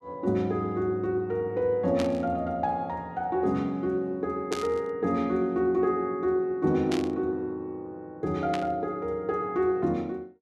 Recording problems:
static burst; 4 times, first at 2 s; peak -3 dB vs average level

